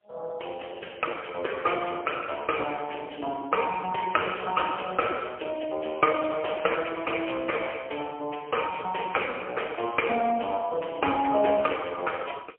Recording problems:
telephone audio; 340 Hz to 2.4 kHz, AMR-NB, then MP3

